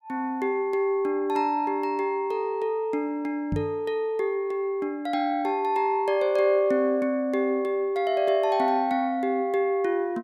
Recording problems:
microphone thump; at 3.5 s; peak 0 dB vs average level

